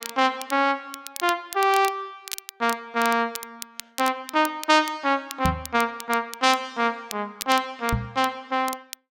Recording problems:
crackling; vinyl, SNR 14 dB
microphone bump; at 5.5 s and at 8 s; peak +2 dB vs average level

